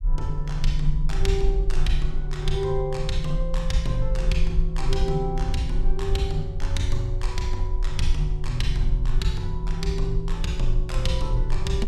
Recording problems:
rumble; below 40 Hz, strongest tone 20 Hz, SNR 1 dB

